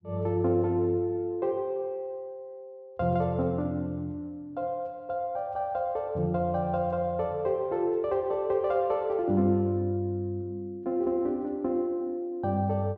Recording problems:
none

